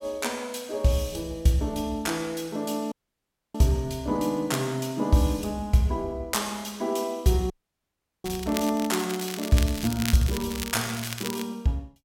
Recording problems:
dropout; at 3 s for 0.5 s and at 7.5 s for 0.5 s
crackling; from 8.5 to 11 s; loose cable, SNR 9 dB

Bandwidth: 16.5 kHz